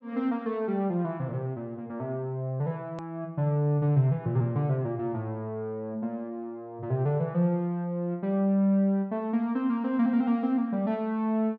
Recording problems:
low-pass filter; nothing above 7.9 kHz
click at an edit; at 3 s

